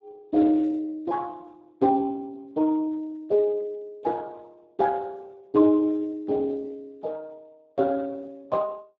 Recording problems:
lossy codec; Speex, log-spectral distance 2 dB

